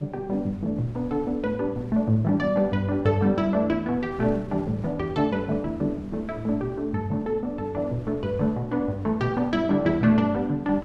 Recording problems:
wind on the microphone; below 230 Hz, SNR 20 dB

